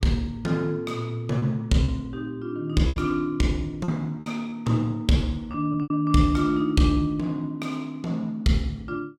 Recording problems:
lost packets; 5% of the sound replaced, filled with repeated pitch periods

